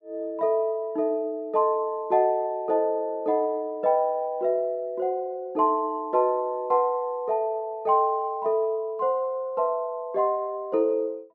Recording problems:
none

